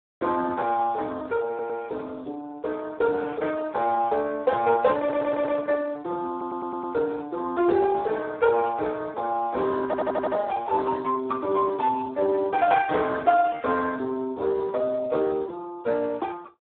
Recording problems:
telephone audio; 300 Hz to 2.8 kHz, Speex
audio stuttering; 4 times, first at 1.5 s

